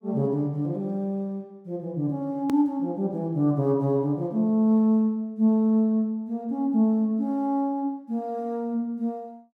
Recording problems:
click at an edit; at 2.5 s

